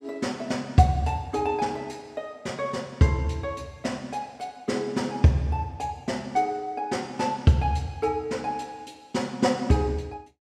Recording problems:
none

